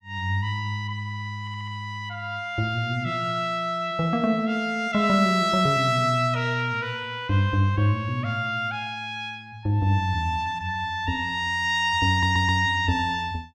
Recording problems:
stutter; at 1.5 s and at 12 s

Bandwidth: 15.5 kHz